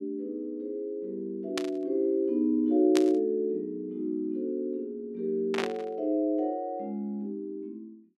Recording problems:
static burst; at 1.5 s, at 3 s and at 5.5 s; peak +2 dB vs average level

